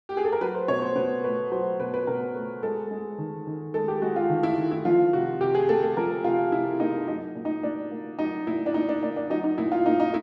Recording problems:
none

